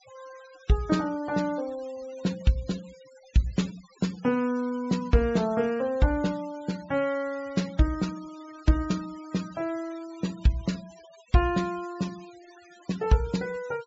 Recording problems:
low-pass filter; nothing above 8 kHz
denoising artefacts; signal-to-artefact ratio 20 dB

